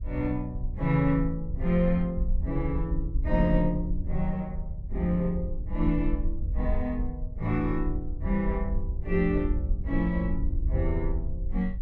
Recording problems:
wind on the microphone; below 64 Hz, SNR 3 dB

